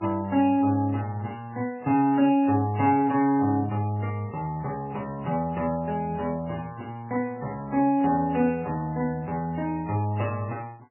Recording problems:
lossy compression; MP3, then AAC, log-spectral distance 2 dB, nothing above 2.8 kHz

